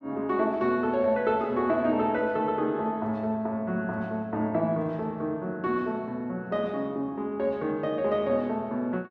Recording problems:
none

